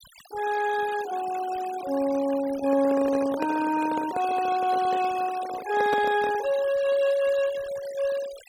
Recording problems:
denoising artefacts; signal-to-artefact ratio 15 dB
handling noise; from 2.5 to 6.5 s; peak 0 dB vs average level

